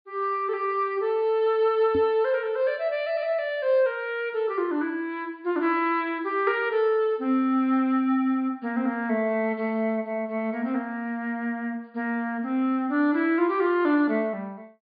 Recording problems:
treble missing; nothing above 4.8 kHz
knock on the microphone; at 2 s; peak -2 dB vs average level

